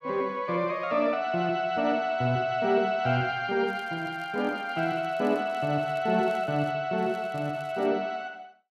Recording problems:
crackle; from 3.5 to 6.5 s and at 7 s; loose cable, SNR 29 dB

